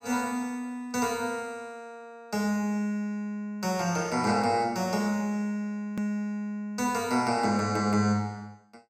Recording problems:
edit click; at 6 s

